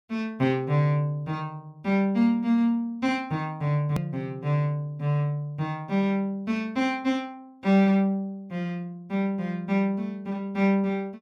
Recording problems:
click at an edit; at 4 s

